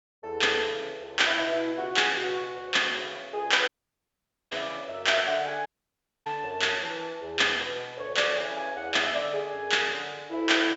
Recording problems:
treble missing; nothing above 8 kHz
audio cutting out; at 3.5 s for 1 s and at 5.5 s for 0.5 s

